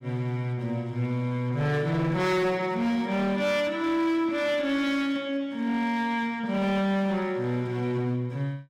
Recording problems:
distortion; hard clipping, signal-to-distortion ratio 11 dB

